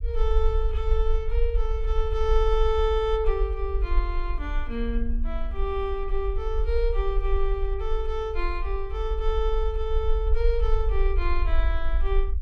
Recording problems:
rumble; below 48 Hz, SNR -1 dB

